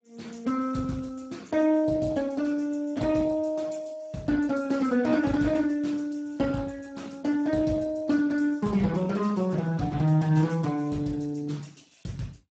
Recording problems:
lossy compression; Speex, log-spectral distance 3 dB, nothing above 7.6 kHz

